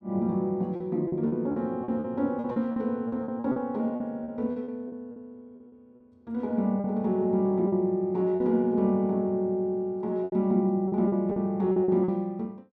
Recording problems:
lost packets; 10% of the sound replaced, filled with repeated pitch periods

